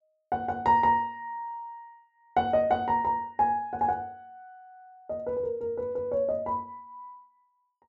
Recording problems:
none

